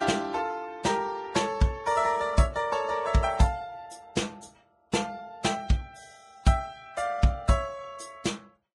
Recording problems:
codec artefacts; Vorbis, log-spectral distance 3 dB, nothing above 10.4 kHz

